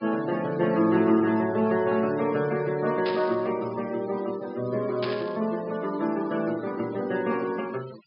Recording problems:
treble cut off; nothing above 5.5 kHz
denoising artefacts; signal-to-artefact ratio 20 dB
static burst; at 3 s and at 5 s; peak -4 dB vs average level

